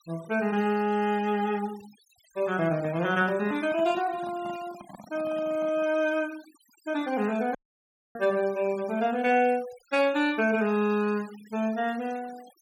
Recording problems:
denoising artefacts; signal-to-artefact ratio 21 dB
handling noise; from 2.5 to 6 s; peak -11 dB vs average level
audio cutting out; at 7.5 s for 0.5 s

